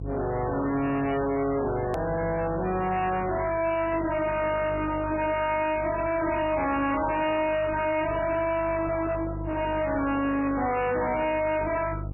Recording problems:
codec artefacts; MP3, log-spectral distance 5 dB, nothing above 2.5 kHz
distortion; soft clipping, signal-to-distortion ratio 7 dB
electrical hum; 50 Hz, harmonics up to 1.7 kHz, SNR 9 dB
edit click; at 2 s

